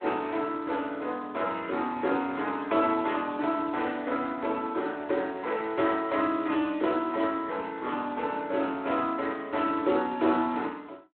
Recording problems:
phone line; 280 Hz to 3.7 kHz, Speex

